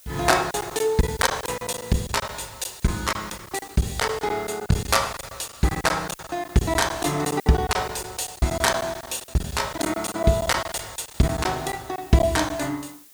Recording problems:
hiss; SNR 22 dB
lost packets; 13% of the sound replaced, filled with silence

